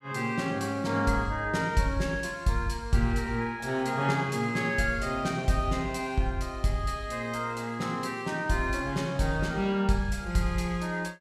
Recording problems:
none

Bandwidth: 15 kHz